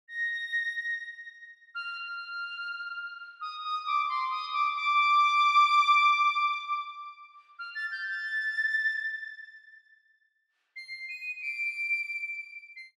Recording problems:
none

